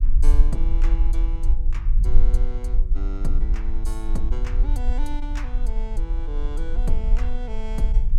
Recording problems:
low-frequency rumble; below 40 Hz, strongest tone 20 Hz, SNR -11 dB

